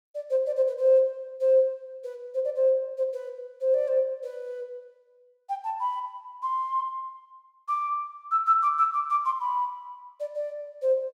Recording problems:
none

